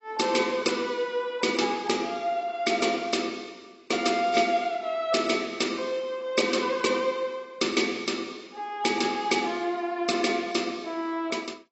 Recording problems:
lossy compression; AAC, log-spectral distance 4 dB, nothing above 7.8 kHz

